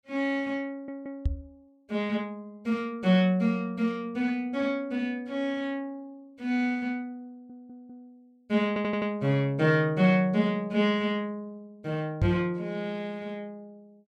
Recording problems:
audio stuttering; at 0.5 s, at 7.5 s and at 8.5 s
microphone bump; at 1.5 s and at 12 s; peak +5 dB vs average level

